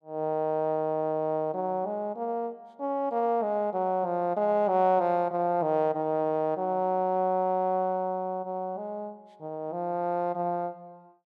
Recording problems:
none

